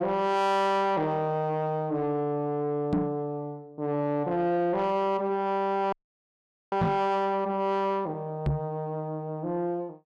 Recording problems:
distorted audio; soft clipping, signal-to-distortion ratio 10 dB
microphone bump; at 3 s, at 7 s and at 8.5 s; peak +5 dB vs average level
audio freezing; at 6 s for 1 s

